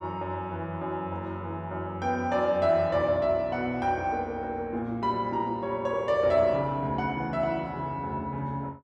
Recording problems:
none

